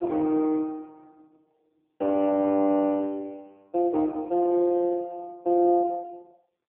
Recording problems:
telephone audio; 220 Hz to 3.2 kHz, AMR-NB

